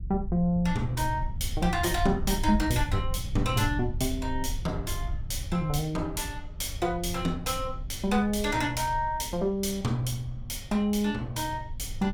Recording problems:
low-frequency rumble; below 82 Hz, SNR 8 dB

